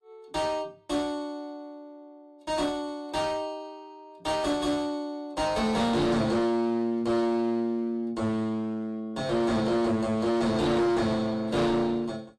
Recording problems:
codec artefacts; AAC, log-spectral distance 2 dB
distorted audio; hard clipping, uneven, signal-to-distortion ratio 6 dB

